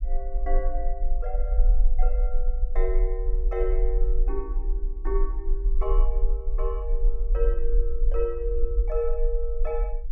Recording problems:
rumble; below 38 Hz, SNR -5 dB

